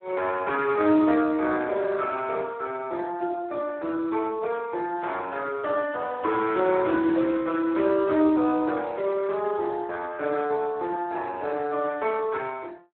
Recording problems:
telephone audio; 260 Hz to 3 kHz, Speex

